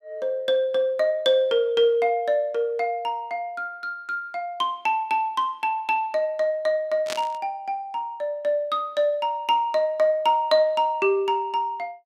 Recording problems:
burst of static; at 7 s; peak -3 dB vs average level

